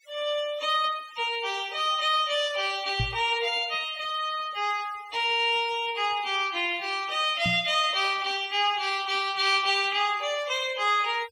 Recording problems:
denoising artefacts; signal-to-artefact ratio 19 dB
microphone bump; at 3 s and at 7.5 s; peak 0 dB vs average level

